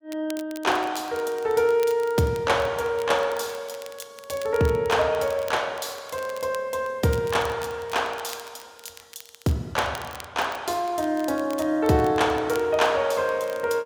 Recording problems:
crackle; vinyl, SNR 20 dB

